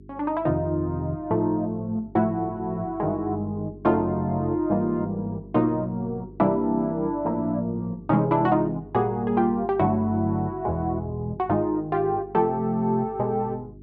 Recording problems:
hum; 50 Hz, harmonics up to 400 Hz, SNR 20 dB

